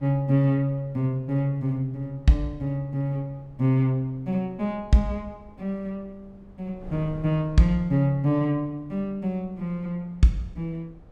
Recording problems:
wind on the microphone; below 220 Hz, SNR 24 dB

